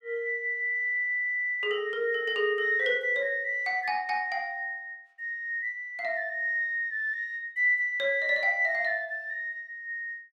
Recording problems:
none

